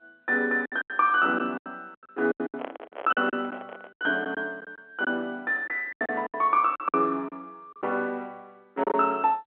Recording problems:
telephone audio; 260 Hz to 3.5 kHz, G.711
packet loss; 13% of the sound replaced, filled with silence
handling noise; from 2.5 to 4 s; peak -4 dB vs average level

